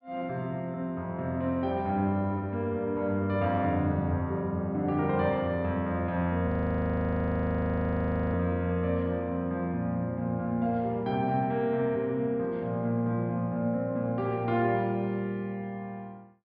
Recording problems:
treble missing; nothing above 5.5 kHz
frozen audio; at 6.5 s for 2 s

